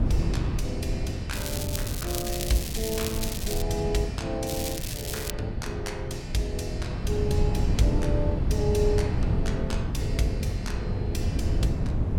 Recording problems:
rumble; below 110 Hz, SNR 12 dB
wind on the microphone; below 150 Hz, SNR -2 dB
crackle; from 1.5 to 3.5 s and at 4.5 s; loose cable, SNR 2 dB

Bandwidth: 17 kHz